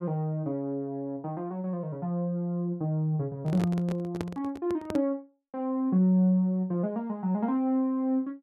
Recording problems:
microphone handling noise; from 3.5 to 5 s; peak -1 dB vs average level

